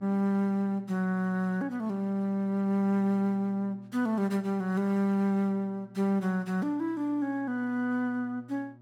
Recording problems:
electrical hum; 60 Hz, harmonics up to 960 Hz, SNR 25 dB

